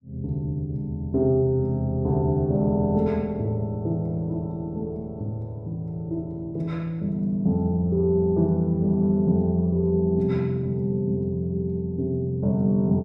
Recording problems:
none

